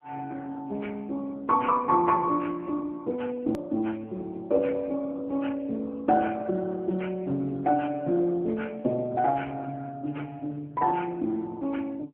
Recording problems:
phone line; 240 Hz to 2.2 kHz, AMR-NB
edit click; at 3.5 s

